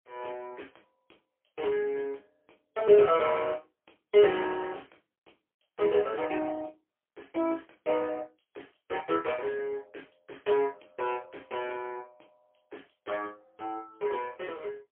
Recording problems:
phone line; 280 Hz to 3.3 kHz, AMR-NB, then MP3

